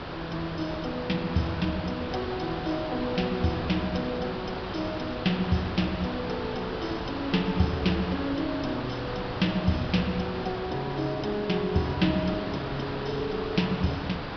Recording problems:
low-pass filter; nothing above 5.5 kHz
hiss; SNR 5 dB

